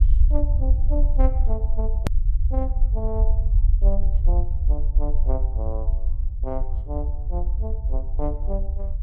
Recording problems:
rumble; below 56 Hz, SNR -10 dB
hard cut with a click; at 2 s

